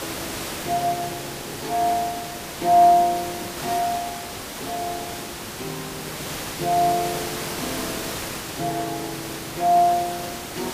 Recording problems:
background hiss; slope -3 dB per octave, SNR 8 dB

